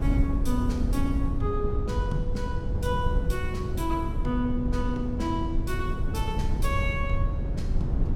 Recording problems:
hum; 50 Hz, harmonics up to 500 Hz, SNR 18 dB
rumble; below 96 Hz, SNR -2 dB
wind on the microphone; below 280 Hz, SNR 12 dB

